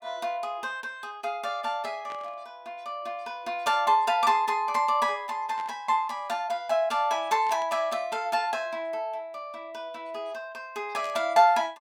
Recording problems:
static burst; 4 times, first at 2 s; peak -13 dB vs average level

